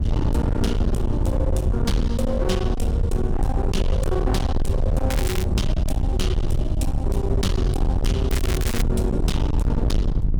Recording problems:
distortion; hard clipping, uneven, signal-to-distortion ratio 5 dB
low-frequency rumble; below 100 Hz, SNR -2 dB
crackling; at 5 s and at 8.5 s; loose cable, SNR 5 dB

